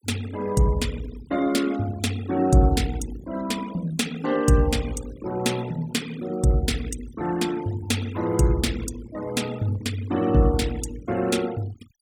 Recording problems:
denoising artefacts; signal-to-artefact ratio 17 dB

